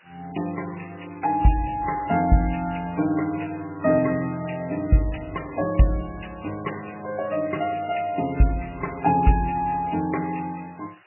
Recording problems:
lossy codec; MP3, log-spectral distance 12 dB, nothing above 2.7 kHz
background hiss; SNR 27 dB

